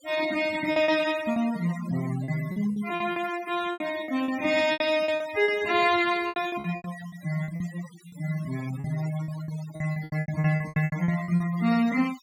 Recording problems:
denoising artefacts; signal-to-artefact ratio 15 dB
lost packets; 15% of the sound replaced, filled with repeated pitch periods

